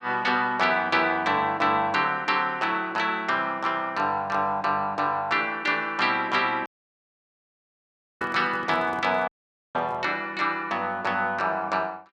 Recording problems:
audio cutting out; at 6.5 s for 1.5 s and at 9.5 s
microphone handling noise; from 8 to 10 s; peak -12 dB vs average level

